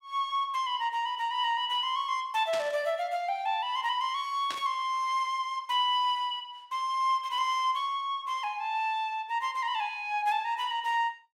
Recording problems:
burst of static; at 2.5 s and at 4.5 s; peak -4 dB vs average level

